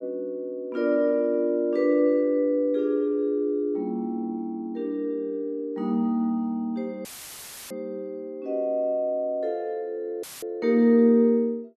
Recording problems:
audio cutting out; at 7 s for 0.5 s and at 10 s; filled with static

